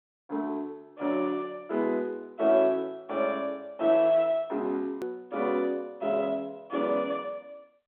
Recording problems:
telephone audio; 260 Hz to 3.9 kHz, G.711
click at an edit; at 5 s

